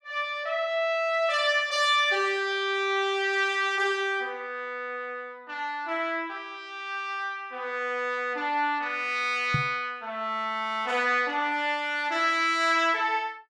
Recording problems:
knock on the microphone; at 9.5 s; peak +2 dB vs average level

